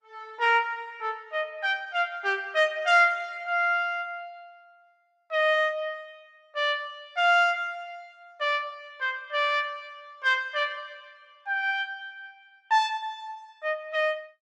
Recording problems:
lossy codec; Opus, log-spectral distance 2 dB, nothing above 12 kHz

